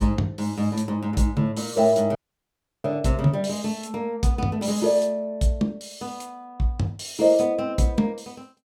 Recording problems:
audio cutting out; at 2 s for 0.5 s

